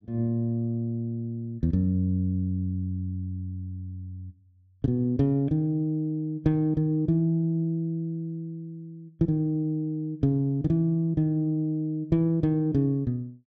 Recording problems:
none

